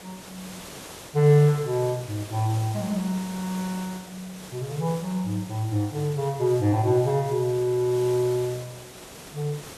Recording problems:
hiss; slope -3 dB per octave, SNR 16 dB

